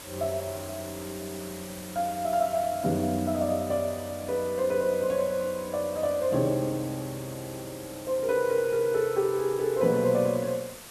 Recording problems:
background hiss; slope -2 dB per octave, SNR 15 dB

